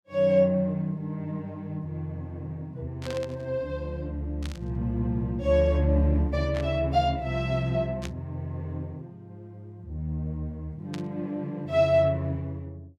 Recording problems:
burst of static; 5 times, first at 3 s; peak -6 dB vs average level

